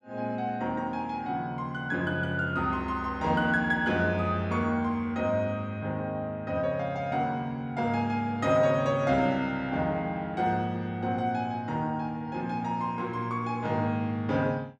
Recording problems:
none

